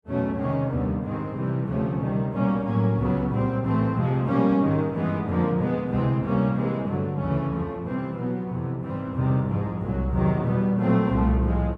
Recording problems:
none

